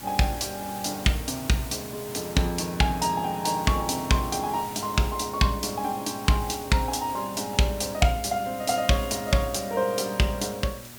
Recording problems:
hum; 60 Hz, harmonics up to 1.3 kHz, SNR 23 dB
background hiss; slope -1 dB per octave, SNR 14 dB

